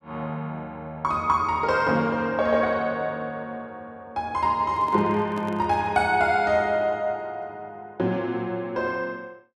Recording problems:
handling noise; from 4.5 to 6 s; peak -9 dB vs average level

